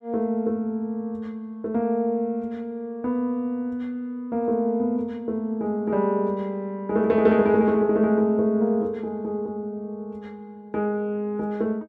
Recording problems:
none

